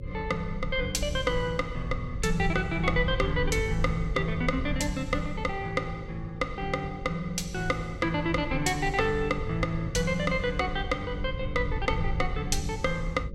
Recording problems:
hum; 50 Hz, harmonics up to 550 Hz, SNR 16 dB
rumble; below 92 Hz, SNR 8 dB

